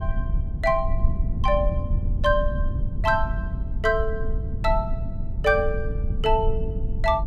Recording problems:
rumble; below 78 Hz, SNR 3 dB

